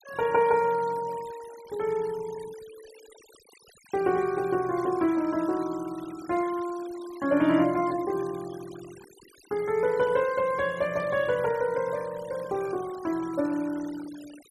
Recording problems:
noise reduction artefacts; signal-to-artefact ratio 20 dB

